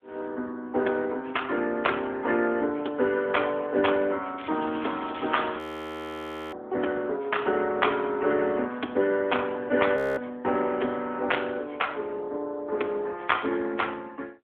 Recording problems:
telephone audio; 240 Hz to 3.4 kHz, AMR-NB
crackle; from 4.5 to 5.5 s; loose cable, SNR 16 dB
frozen audio; at 5.5 s for 1 s and at 10 s

